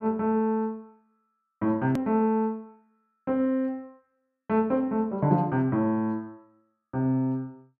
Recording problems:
edit click; at 2 s

